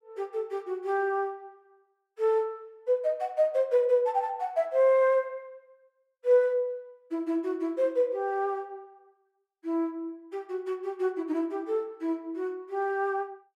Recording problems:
none

